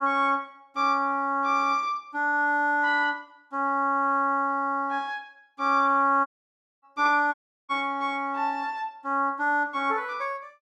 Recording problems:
audio cutting out; at 6.5 s for 0.5 s and at 7.5 s

